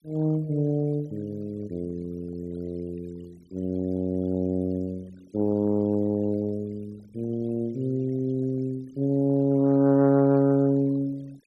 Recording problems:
denoising artefacts; signal-to-artefact ratio 27 dB

